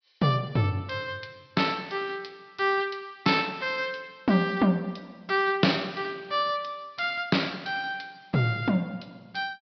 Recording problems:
treble cut off; nothing above 5.5 kHz

